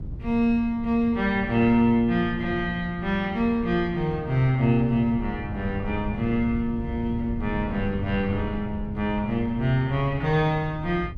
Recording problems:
wind noise; below 140 Hz, SNR 12 dB

